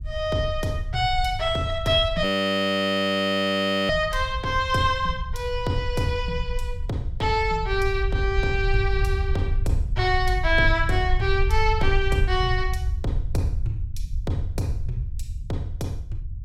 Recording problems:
low-frequency rumble; below 72 Hz, SNR 5 dB
audio freezing; at 2 s for 1.5 s

